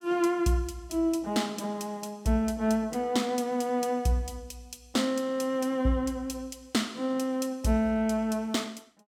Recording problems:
none

